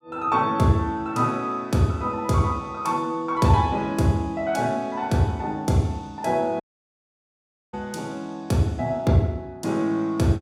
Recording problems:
audio cutting out; at 6.5 s for 1 s

